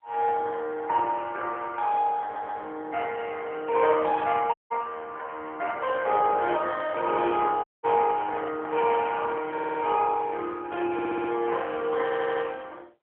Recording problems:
phone line; 370 Hz to 3.3 kHz, AMR-NB
stutter; 4 times, first at 2 s
audio cutting out; at 4.5 s and at 7.5 s
handling noise; from 8 to 10 s; peak -10 dB vs average level

